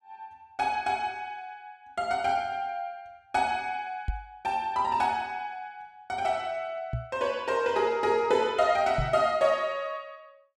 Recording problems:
microphone bump; at 4 s, at 7 s and at 9 s; peak +1 dB vs average level

